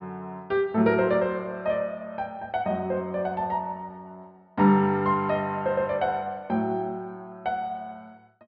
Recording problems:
treble cut off; nothing above 5.5 kHz

